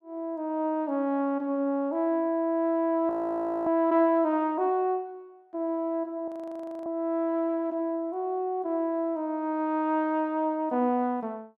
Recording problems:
frozen audio; at 3 s for 0.5 s and at 6.5 s for 0.5 s

